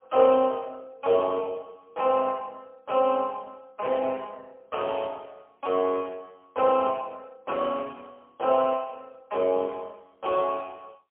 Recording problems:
phone line; 320 Hz to 2 kHz, AMR-NB, then MP3

